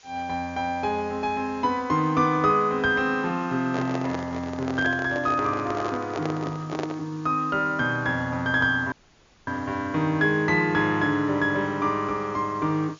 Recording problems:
low-pass filter; nothing above 7.1 kHz
hiss; slope +2 dB per octave, SNR 27 dB
handling noise; from 3.5 to 7 s; peak -2 dB vs average level
audio cutting out; at 9 s for 0.5 s

